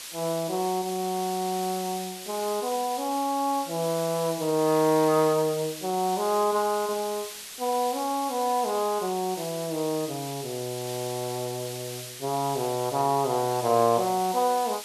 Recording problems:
background hiss; slope +3 dB per octave, SNR 10 dB

